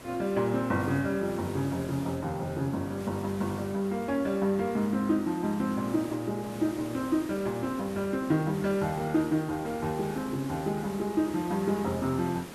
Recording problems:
background hiss; slope -5 dB per octave, SNR 15 dB

